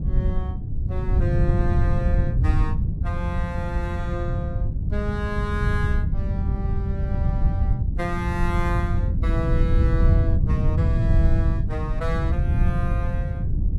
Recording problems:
wind on the microphone; below 110 Hz, SNR -7 dB

